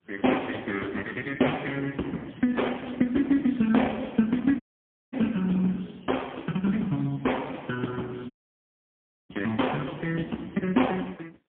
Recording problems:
telephone audio; 150 Hz to 3.3 kHz, AMR-NB, then MP3
audio cutting out; at 4.5 s for 0.5 s and at 8.5 s for 1 s

